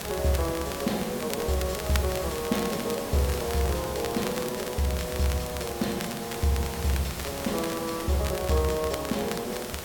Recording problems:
hiss; slope -4 dB per octave, SNR 7 dB
crackle; vinyl, SNR 11 dB

